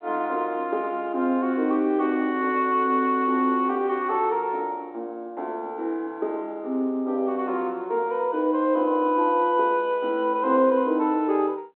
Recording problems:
phone line; 220 Hz to 3.4 kHz, G.726

